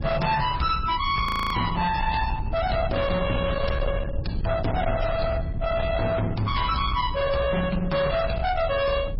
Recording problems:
lossy codec; MP3, log-spectral distance 3 dB, nothing above 5.3 kHz
distorted audio; hard clipping, uneven, signal-to-distortion ratio 7 dB
low-frequency rumble; below 190 Hz, SNR 6 dB
frozen audio; at 1.5 s

